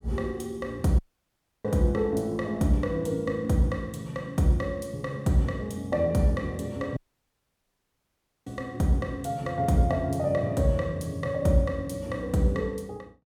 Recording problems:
dropout; at 1 s for 0.5 s and at 7 s for 1.5 s

